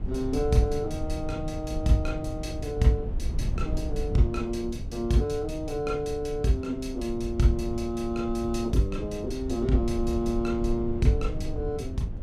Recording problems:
rumble; below 100 Hz, SNR 7 dB

